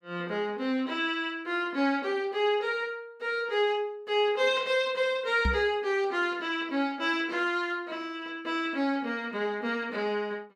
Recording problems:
microphone thump; at 5.5 s; peak +3 dB vs average level

